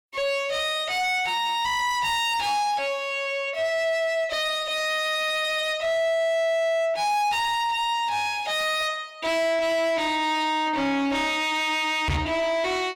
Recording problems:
distortion; soft clipping, signal-to-distortion ratio 6 dB
microphone bump; at 12 s; peak +2 dB vs average level

